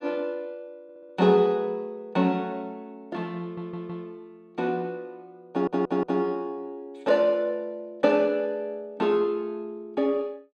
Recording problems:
stutter; at 1 s, at 3.5 s and at 5.5 s

